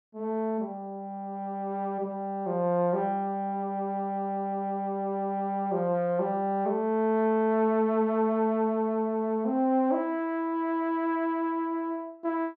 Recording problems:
none

